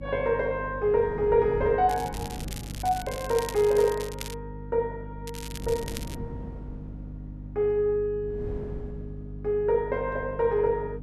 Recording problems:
hum; 50 Hz, harmonics up to 300 Hz, SNR 14 dB
wind on the microphone; below 250 Hz, SNR 16 dB
crackle; from 2 to 4.5 s and at 5.5 s; loose cable, SNR 15 dB

